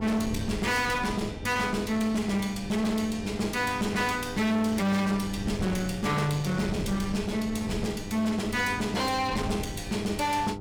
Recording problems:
distorted audio; hard clipping, uneven, signal-to-distortion ratio 6 dB
hum; 50 Hz, harmonics up to 1.4 kHz, SNR 14 dB
wind on the microphone; below 220 Hz, SNR 12 dB

